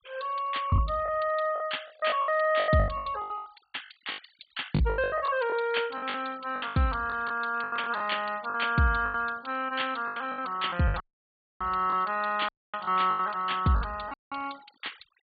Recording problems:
treble missing; nothing above 4.6 kHz
denoising artefacts; signal-to-artefact ratio 23 dB
lost packets; 15% of the sound replaced, filled with the last packet
dropout; at 11 s for 0.5 s, at 12 s and at 14 s

